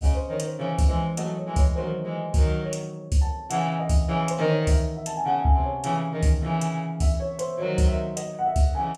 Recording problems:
none

